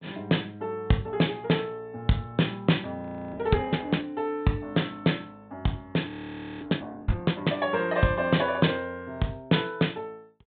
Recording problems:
treble cut off; nothing above 4 kHz
audio freezing; at 3 s and at 6 s for 0.5 s

